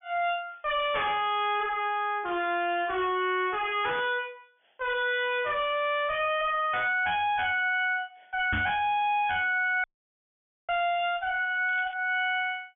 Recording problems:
treble missing; nothing above 3.4 kHz
distortion; hard clipping, signal-to-distortion ratio 5 dB
microphone bump; at 8.5 s; peak +1 dB vs average level
audio cutting out; at 10 s for 1 s
crackle; at 12 s; loose cable, SNR 28 dB

